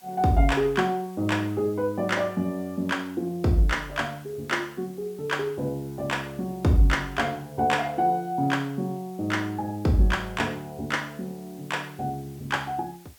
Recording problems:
hiss; slope 0 dB per octave, SNR 26 dB

